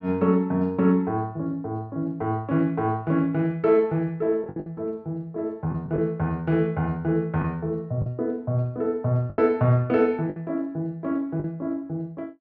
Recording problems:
lost packets; 4% of the sound replaced, filled with the last packet

